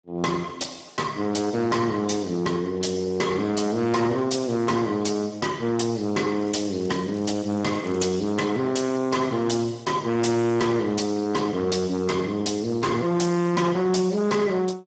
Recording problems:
codec artefacts; Speex, log-spectral distance 5 dB, nothing above 7.6 kHz
distorted audio; hard clipping, signal-to-distortion ratio 7 dB
crackling; from 6.5 to 8 s; loose cable, SNR 26 dB

